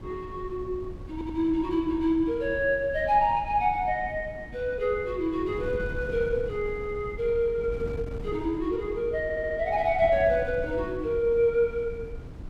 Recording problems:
wind on the microphone; below 170 Hz, SNR 14 dB
audio stuttering; at 1 s and at 9 s

